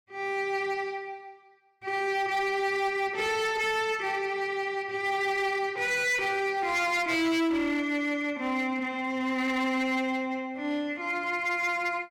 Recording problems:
distortion; hard clipping, signal-to-distortion ratio 11 dB

